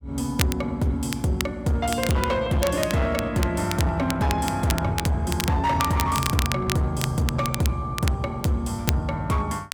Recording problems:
distortion; hard clipping, signal-to-distortion ratio 11 dB
crackling; vinyl, SNR 9 dB

